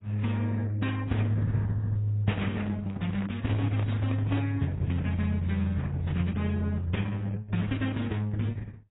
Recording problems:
codec artefacts; Opus, then AAC, log-spectral distance 3 dB, nothing above 3.8 kHz
handling noise; from 2.5 to 4.5 s; peak -3 dB vs average level

